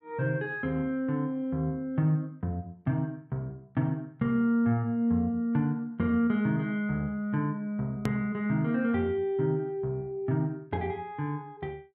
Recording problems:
edit click; at 8 s

